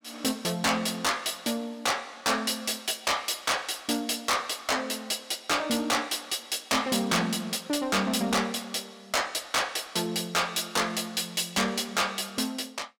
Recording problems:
distortion; soft clipping, signal-to-distortion ratio 12 dB

